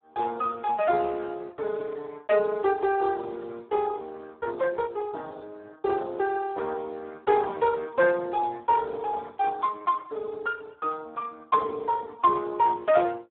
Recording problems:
telephone audio; 300 Hz to 2.1 kHz, Speex

